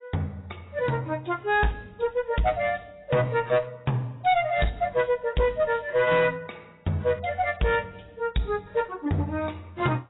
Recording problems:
lossy compression; AAC, log-spectral distance 4 dB, nothing above 3.8 kHz
distorted audio; hard clipping, uneven, signal-to-distortion ratio 11 dB

